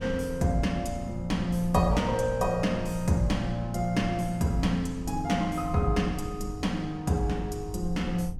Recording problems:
rumble; below 90 Hz, SNR 13 dB

